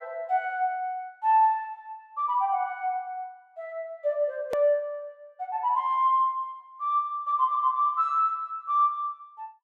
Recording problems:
hard cut with a click; at 4.5 s

